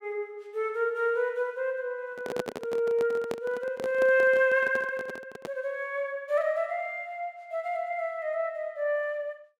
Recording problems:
microphone handling noise; from 2 to 5.5 s; peak 0 dB vs average level

